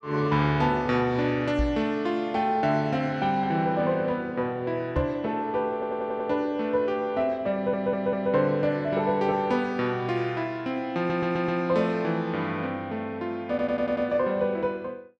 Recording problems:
microphone bump; at 1.5 s and at 5 s; peak +1 dB vs average level
stutter; 4 times, first at 5.5 s

